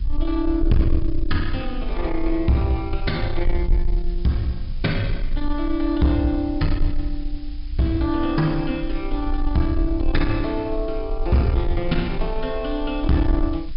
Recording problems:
treble missing; nothing above 5.5 kHz
distortion; soft clipping, signal-to-distortion ratio 11 dB
hiss; SNR 27 dB
low-frequency rumble; below 46 Hz, strongest tone 18 Hz, SNR 6 dB

